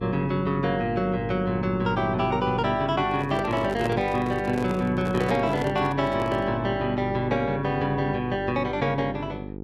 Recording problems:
electrical hum; 50 Hz, harmonics up to 900 Hz, SNR 9 dB
microphone handling noise; from 3 to 6.5 s; peak -2 dB vs average level

